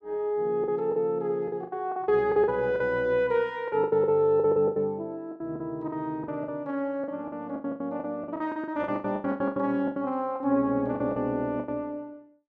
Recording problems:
lost packets; 17% of the sound replaced, filled with the last packet

